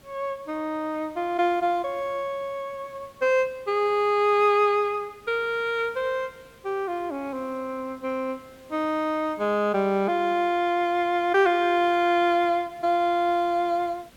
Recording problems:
background hiss; SNR 28 dB

